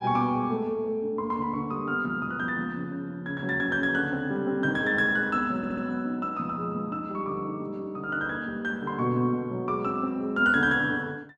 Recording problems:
stutter; at 5.5 s

